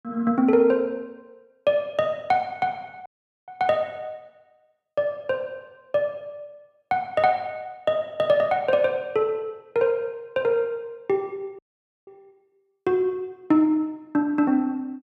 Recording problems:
audio cutting out; at 3 s and at 12 s

